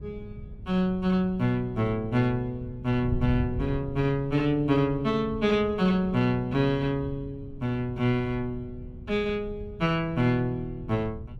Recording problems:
wind noise; below 130 Hz, SNR 13 dB

